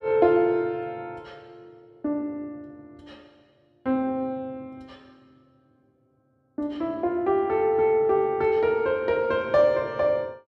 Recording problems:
none

